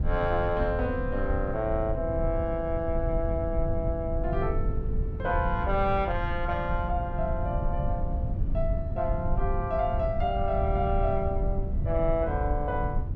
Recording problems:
low-frequency rumble; below 98 Hz, SNR 2 dB

